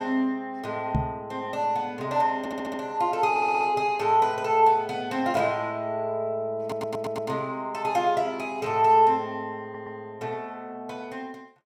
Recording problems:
microphone bump; at 1 s; peak +4 dB vs average level
stutter; 4 times, first at 2.5 s

